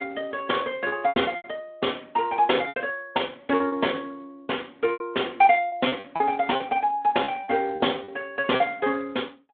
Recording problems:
phone line; 170 Hz to 3.6 kHz, Speex
packet loss; 10% of the sound replaced, filled with repeated pitch periods

